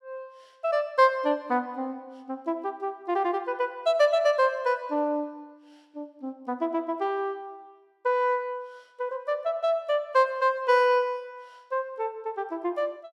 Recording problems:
none

